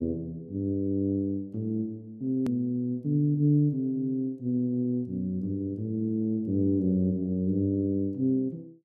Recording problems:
edit click; at 2.5 s

